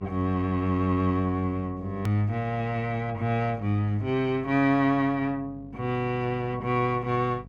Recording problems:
hum; 50 Hz, harmonics up to 750 Hz, SNR 20 dB
edit click; at 2 s

